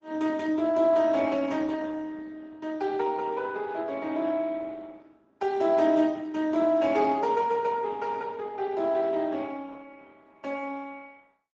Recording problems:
lossy compression; Speex, then Opus, log-spectral distance 3 dB

